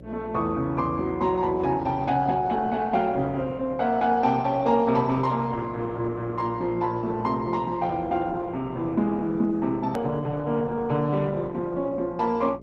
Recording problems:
codec artefacts; Opus, log-spectral distance 2 dB
electrical hum; 60 Hz, harmonics up to 600 Hz, SNR 17 dB
click at an edit; at 10 s

